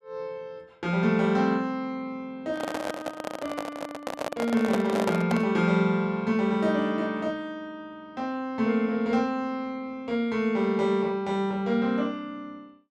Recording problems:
handling noise; from 2.5 to 5.5 s; peak +2 dB vs average level

